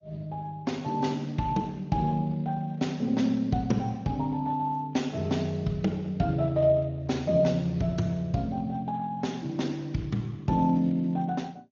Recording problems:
lossy compression; MP2, then Speex, log-spectral distance 3 dB, nothing above 6.7 kHz

